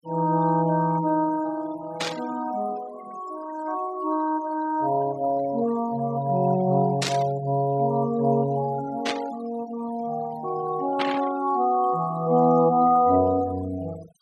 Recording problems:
denoising artefacts; signal-to-artefact ratio 19 dB
static burst; 4 times, first at 2 s; peak +2 dB vs average level

